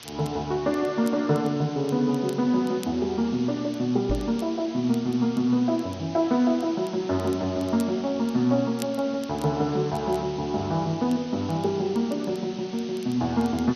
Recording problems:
codec artefacts; MP2, log-spectral distance 6 dB
hum; 60 Hz, harmonics up to 1.8 kHz, SNR 29 dB
hiss; slope +1 dB per octave, SNR 18 dB
crackling; vinyl, SNR 25 dB
knock on the microphone; at 4 s; peak +1 dB vs average level

